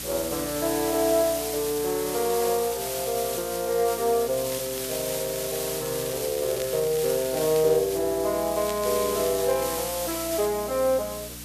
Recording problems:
hum; 60 Hz, harmonics up to 300 Hz, SNR 20 dB
hiss; slope +1 dB per octave, SNR 6 dB
crackling; from 4.5 to 8 s and from 8.5 to 10 s; loose cable, SNR 16 dB

